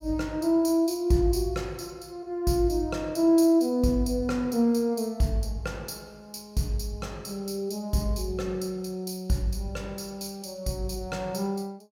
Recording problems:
none

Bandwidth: 17 kHz